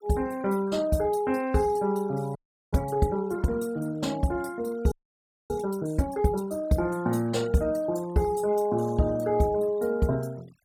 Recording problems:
noise reduction artefacts; signal-to-artefact ratio 24 dB
audio freezing; at 2.5 s and at 5 s for 0.5 s

